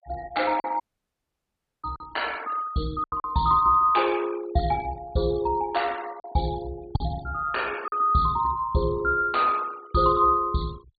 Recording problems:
treble missing; nothing above 4.6 kHz
denoising artefacts; signal-to-artefact ratio 21 dB
lost packets; 4% of the sound replaced, filled with silence
audio cutting out; at 1 s for 1 s

